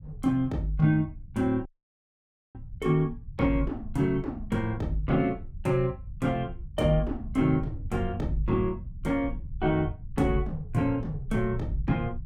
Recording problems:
rumble; below 96 Hz, SNR 13 dB
dropout; at 1.5 s for 1 s

